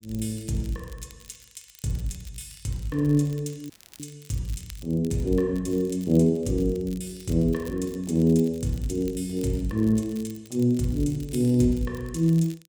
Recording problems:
crackle; vinyl, SNR 24 dB
dropout; at 3.5 s

